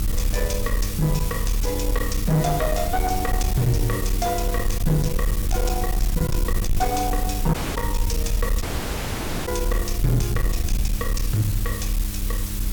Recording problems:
distortion; soft clipping, signal-to-distortion ratio 10 dB
electrical hum; 50 Hz, harmonics up to 600 Hz, SNR 9 dB
background hiss; SNR 6 dB
low-frequency rumble; below 62 Hz, strongest tone 36 Hz, SNR 2 dB
dropout; at 7.5 s and at 8.5 s for 1 s

